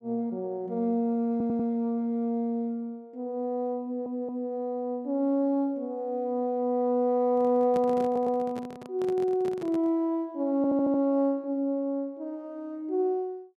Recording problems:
stutter; 4 times, first at 1.5 s
microphone handling noise; from 7.5 to 10 s; peak -6 dB vs average level

